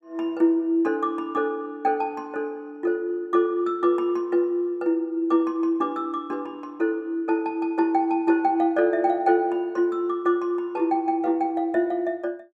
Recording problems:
none

